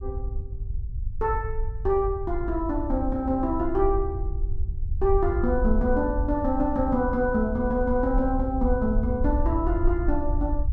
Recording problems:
rumble; below 66 Hz, SNR 5 dB

